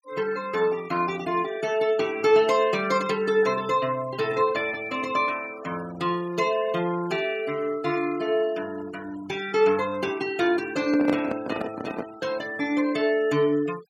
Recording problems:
denoising artefacts; signal-to-artefact ratio 18 dB
microphone handling noise; from 11 to 12 s; peak +2 dB vs average level

